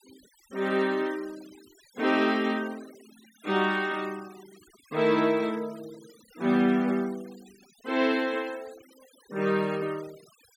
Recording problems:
denoising artefacts; signal-to-artefact ratio 23 dB

